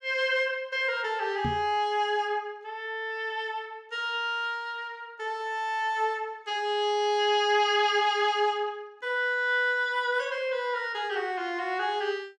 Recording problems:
microphone bump; at 1.5 s; peak -1 dB vs average level

